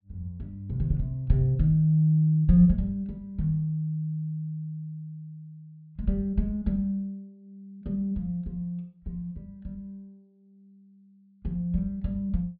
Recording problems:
low-pass filter; nothing above 4.7 kHz

